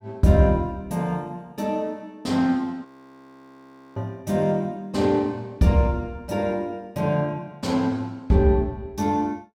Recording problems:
frozen audio; at 3 s for 1 s

